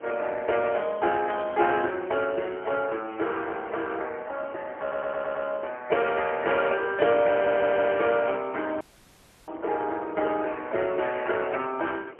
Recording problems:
telephone audio; 300 Hz to 3 kHz, AMR-NB, then MP3
wind on the microphone; below 720 Hz, SNR 21 dB
stutter; at 5 s and at 7.5 s
dropout; at 9 s for 0.5 s

